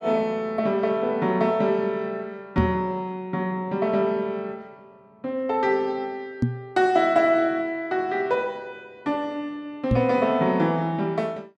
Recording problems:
knock on the microphone; at 2.5 s, at 6.5 s and at 10 s; peak +6 dB vs average level

